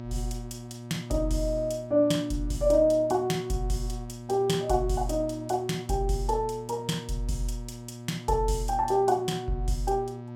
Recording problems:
hum; 60 Hz, harmonics up to 1.3 kHz, SNR 13 dB

